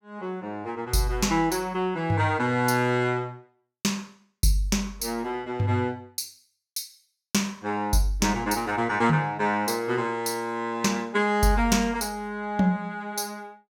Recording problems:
none

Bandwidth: 16.5 kHz